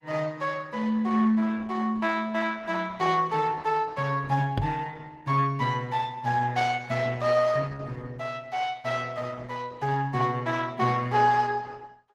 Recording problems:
lossy compression; Opus, log-spectral distance 3 dB
microphone thump; at 4.5 s; peak +4 dB vs average level

